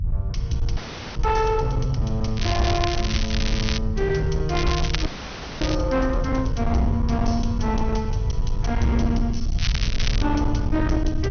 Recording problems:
low-pass filter; nothing above 6.2 kHz
distorted audio; hard clipping, uneven, signal-to-distortion ratio 11 dB
low-frequency rumble; below 94 Hz, SNR 2 dB
frozen audio; at 1 s and at 5 s for 0.5 s
crackling; from 2.5 to 4 s, from 4.5 to 5.5 s and at 9.5 s; loose cable, SNR 5 dB

